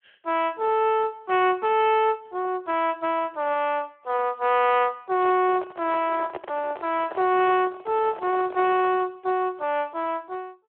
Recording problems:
phone line; 320 Hz to 3.3 kHz, Speex
microphone handling noise; from 5 to 9 s; peak -5 dB vs average level

